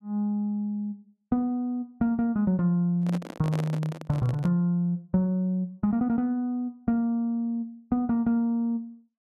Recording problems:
handling noise; from 3 to 4.5 s; peak -4 dB vs average level

